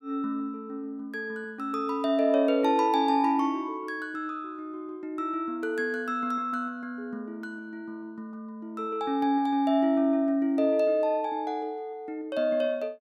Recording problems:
none

